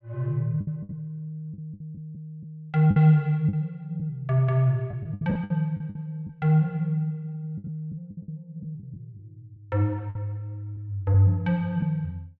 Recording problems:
lost packets; 9% of the sound replaced, filled with the last packet

